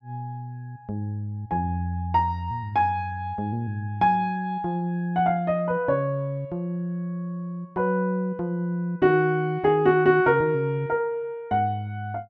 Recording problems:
none

